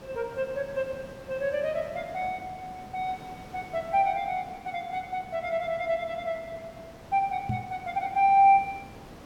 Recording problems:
background hiss; slope -6 dB per octave, SNR 19 dB
knock on the microphone; at 7.5 s; peak +1 dB vs average level

